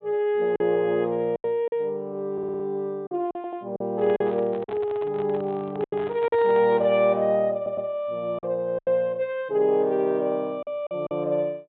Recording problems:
treble cut off; nothing above 4 kHz
lost packets; 7% of the sound replaced, filled with silence
stutter; at 2.5 s, at 3.5 s and at 7.5 s
handling noise; from 4 to 7 s; peak -10 dB vs average level

